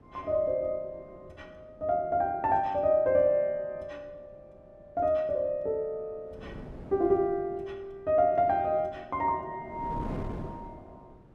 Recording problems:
wind on the microphone; below 380 Hz, SNR 15 dB

